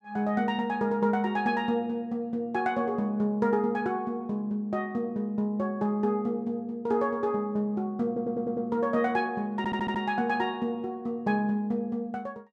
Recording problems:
audio stuttering; at 8 s and at 9.5 s

